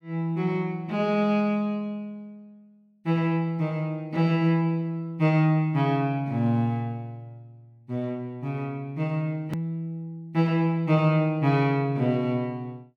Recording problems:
click at an edit; at 9.5 s

